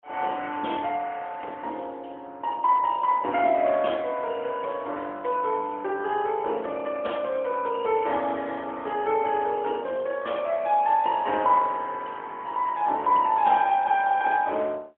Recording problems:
phone line; 240 Hz to 3.4 kHz, AMR-NB, then MP3

